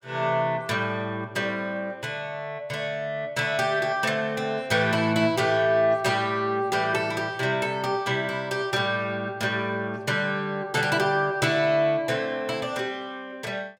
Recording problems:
none

